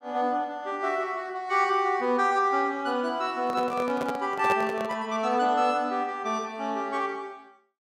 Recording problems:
handling noise; from 3.5 to 5 s; peak -1 dB vs average level

